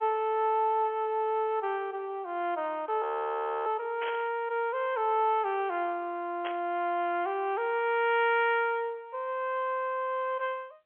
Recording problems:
telephone audio; 300 Hz to 3.5 kHz, G.711
frozen audio; at 3 s for 0.5 s
static burst; at 4 s and at 6.5 s; peak -5 dB vs average level

